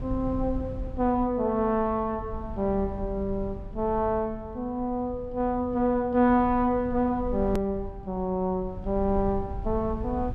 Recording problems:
rumble; below 98 Hz, SNR 12 dB
hard cut with a click; at 7.5 s

